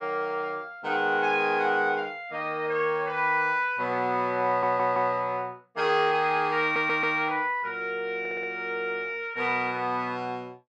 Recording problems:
audio stuttering; at 4.5 s, at 6.5 s and at 8 s

